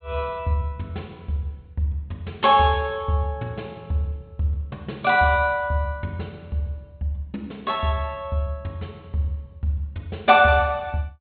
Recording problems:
treble cut off; nothing above 4 kHz

